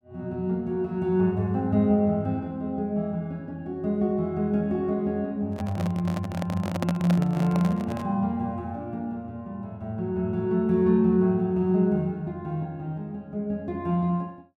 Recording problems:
microphone handling noise; from 5.5 to 8 s; peak +1 dB vs average level

